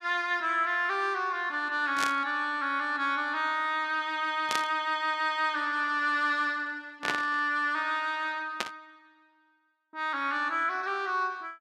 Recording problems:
static burst; 4 times, first at 2 s; peak +3 dB vs average level

